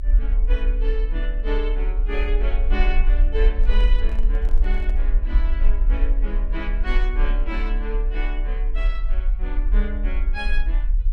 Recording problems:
rumble; below 38 Hz, strongest tone 34 Hz, SNR -9 dB
microphone handling noise; from 3.5 to 5 s; peak -6 dB vs average level

